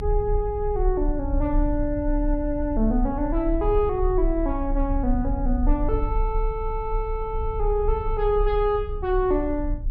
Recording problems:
treble cut off; nothing above 5.5 kHz
rumble; below 44 Hz, strongest tone 34 Hz, SNR 4 dB

